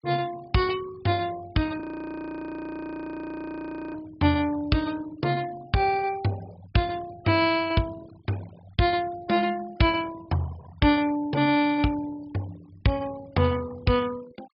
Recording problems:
treble missing; nothing above 5.5 kHz
denoising artefacts; signal-to-artefact ratio 21 dB
frozen audio; at 2 s for 2 s

